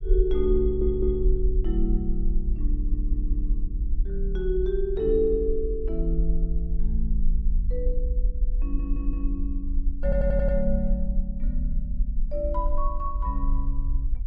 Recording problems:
rumble; below 46 Hz, SNR -1 dB
audio stuttering; 4 times, first at 0.5 s

